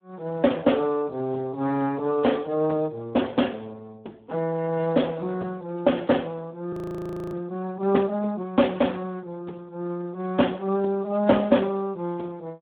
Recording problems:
telephone audio; 190 Hz to 3.4 kHz, Speex
frozen audio; at 6.5 s for 0.5 s

